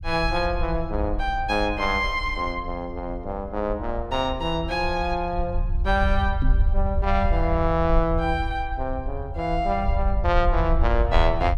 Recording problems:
rumble; below 66 Hz, SNR 3 dB
microphone bump; at 6.5 s; peak 0 dB vs average level

